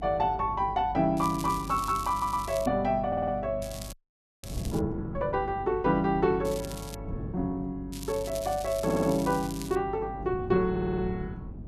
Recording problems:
hum; 50 Hz, harmonics up to 400 Hz, SNR 15 dB
wind on the microphone; below 250 Hz, SNR 15 dB
crackle; 4 times, first at 1 s; loose cable, SNR 15 dB
stutter; 4 times, first at 2 s
audio freezing; at 4 s

